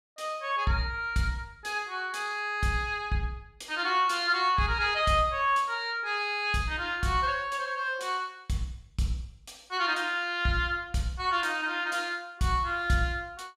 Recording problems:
none

